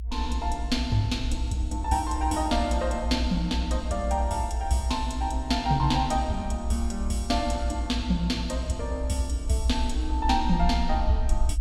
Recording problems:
low-frequency rumble; below 64 Hz, strongest tone 62 Hz, SNR 3 dB

